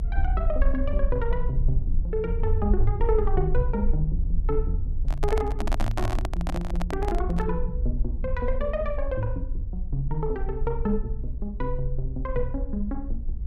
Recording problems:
low-frequency rumble; below 56 Hz, strongest tone 22 Hz, SNR 0 dB
microphone handling noise; from 5 to 7.5 s; peak +4 dB vs average level

